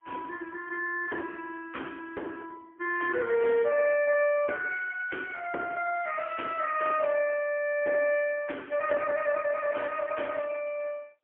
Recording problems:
phone line; 300 Hz to 3.2 kHz, AMR-NB, then MP3

